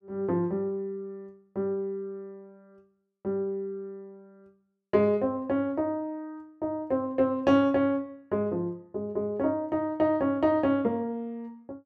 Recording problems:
none

